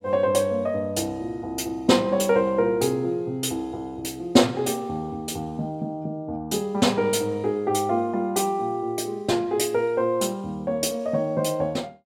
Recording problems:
none

